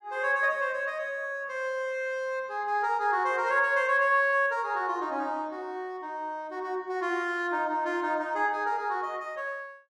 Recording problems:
none

